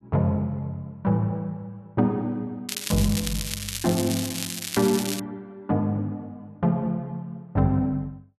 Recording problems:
crackle; from 2.5 to 5 s; loose cable, SNR 4 dB

